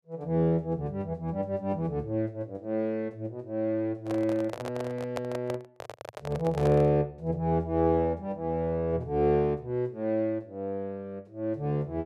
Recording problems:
microphone handling noise; from 4 to 7 s; peak -1 dB vs average level

